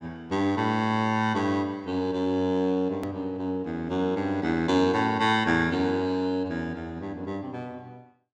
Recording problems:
hard cut with a click; at 3 s

